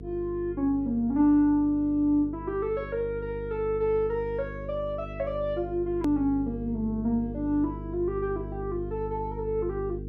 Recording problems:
electrical hum; 50 Hz, harmonics up to 450 Hz, SNR 11 dB
edit click; at 6 s

